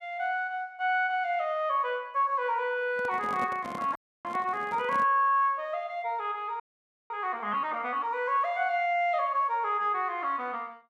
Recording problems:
microphone handling noise; from 3 to 5 s; peak -6 dB vs average level
audio freezing; at 4 s and at 6.5 s for 0.5 s

